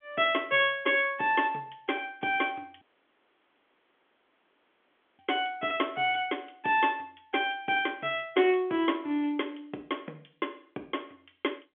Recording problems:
telephone audio; 240 Hz to 3.5 kHz, G.711
audio cutting out; at 3 s for 2.5 s

